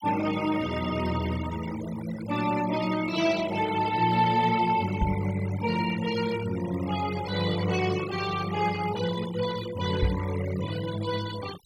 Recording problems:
denoising artefacts; signal-to-artefact ratio 13 dB
microphone thump; at 5 s and at 10 s; peak +5 dB vs average level

